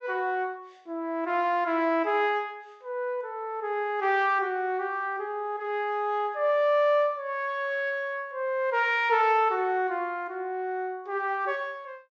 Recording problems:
low-pass filter; nothing above 8 kHz

